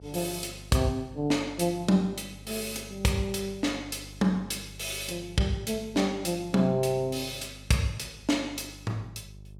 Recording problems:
electrical hum; 50 Hz, harmonics up to 450 Hz, SNR 19 dB

